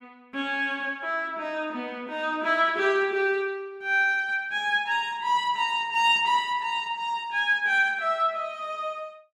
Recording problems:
none

